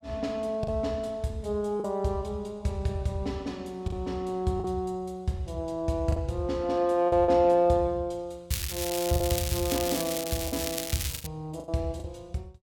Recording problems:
packet loss; 4% of the sound replaced, filled with the last packet
crackle; from 8.5 to 11 s; loose cable, SNR 4 dB

